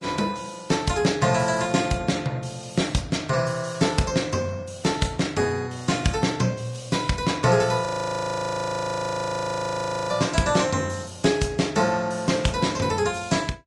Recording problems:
lossy compression; Vorbis, log-spectral distance 4 dB, nothing above 10.4 kHz
frozen audio; at 8 s for 2.5 s

